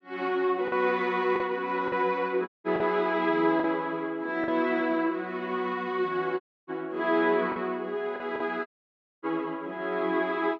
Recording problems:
packet loss; 3% of the sound replaced, filled with the last packet
audio cutting out; at 2.5 s, at 6.5 s and at 8.5 s for 0.5 s

